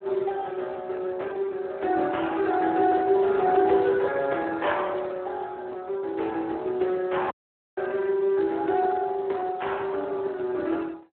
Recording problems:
phone line; 260 Hz to 3.4 kHz, Speex
audio cutting out; at 7.5 s

